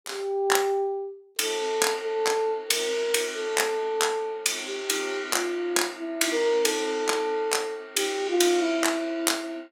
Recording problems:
none

